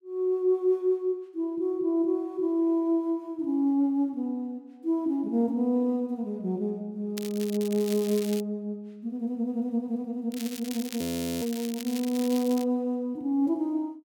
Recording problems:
crackling; from 7 to 8.5 s and from 10 to 13 s; loose cable, SNR 12 dB
audio freezing; at 11 s

